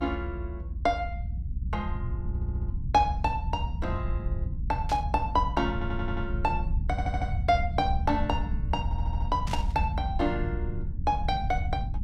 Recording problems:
low-frequency rumble; below 96 Hz, SNR 2 dB
audio stuttering; 4 times, first at 2.5 s
static burst; at 5 s and at 9.5 s; peak -4 dB vs average level

